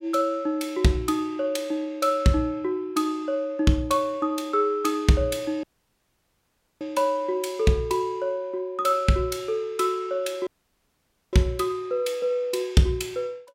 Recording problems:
audio cutting out; at 5.5 s for 1 s and at 10 s for 1 s

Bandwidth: 16 kHz